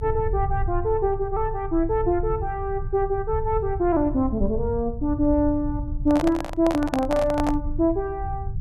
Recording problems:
rumble; below 90 Hz, strongest tone 26 Hz, SNR 8 dB
handling noise; from 6 to 7.5 s; peak +1 dB vs average level

